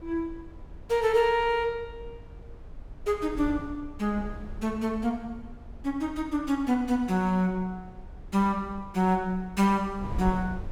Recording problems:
wind on the microphone; below 88 Hz, SNR 16 dB

